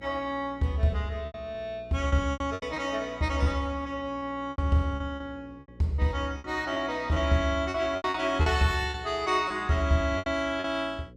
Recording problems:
hum; 60 Hz, harmonics up to 540 Hz, SNR 22 dB
packet loss; 10% of the sound replaced, filled with repeated pitch periods

